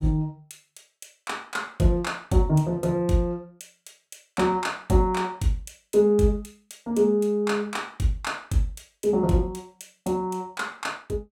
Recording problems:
none

